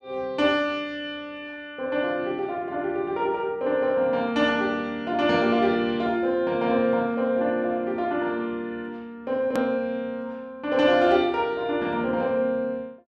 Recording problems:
hard cut with a click; at 9.5 s

